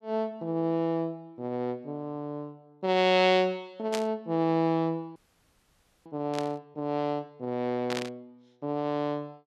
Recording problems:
burst of static; at 4 s, at 6.5 s and at 8 s; peak -1 dB vs average level
frozen audio; at 5 s for 1 s

